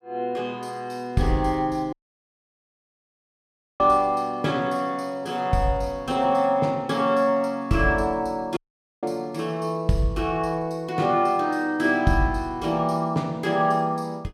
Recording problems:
audio cutting out; at 2 s for 2 s and at 8.5 s

